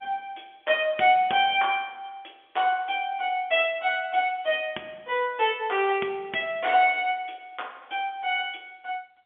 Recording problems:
telephone audio; 240 Hz to 3.5 kHz, G.711

